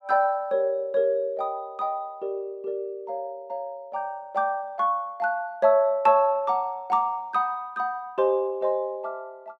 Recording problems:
none

